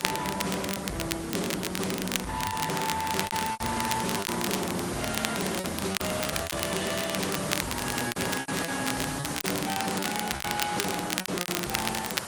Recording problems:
lossy compression; AAC, then Opus, log-spectral distance 12 dB
distortion; hard clipping, signal-to-distortion ratio 6 dB
background hiss; slope -3 dB per octave, SNR 5 dB
crackling; vinyl, SNR 2 dB
packet loss; 10% of the sound replaced, filled with repeated pitch periods

